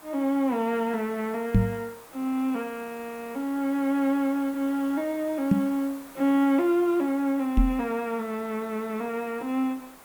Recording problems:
hiss; SNR 20 dB
knock on the microphone; at 1.5 s, at 5.5 s and at 7.5 s; peak +9 dB vs average level

